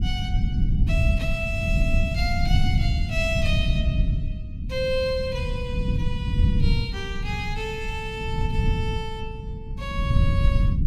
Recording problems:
rumble; below 120 Hz, SNR -4 dB

